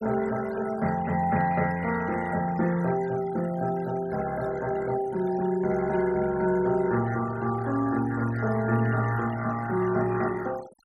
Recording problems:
denoising artefacts; signal-to-artefact ratio 17 dB

